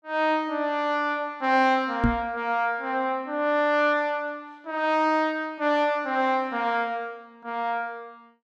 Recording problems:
knock on the microphone; at 2 s; peak +6 dB vs average level

